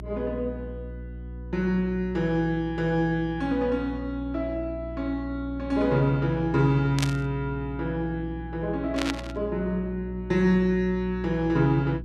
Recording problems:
mains hum; 60 Hz, harmonics up to 360 Hz, SNR 12 dB
static burst; at 7 s and at 9 s; peak +2 dB vs average level

